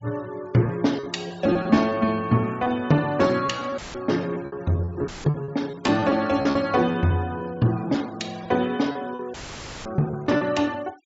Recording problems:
low-pass filter; nothing above 8 kHz
noise reduction artefacts; signal-to-artefact ratio 24 dB
packet loss; 10% of the sound replaced, filled with repeated pitch periods
audio cutting out; at 4 s, at 5 s and at 9.5 s for 0.5 s; filled with static

